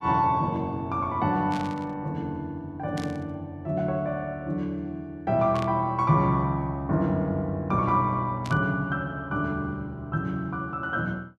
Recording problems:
static burst; 4 times, first at 1.5 s; peak -8 dB vs average level

